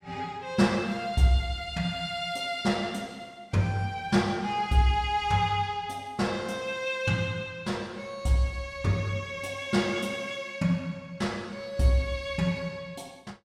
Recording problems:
none

